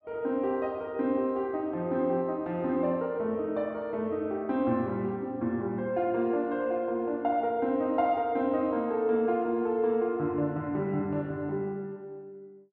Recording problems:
none

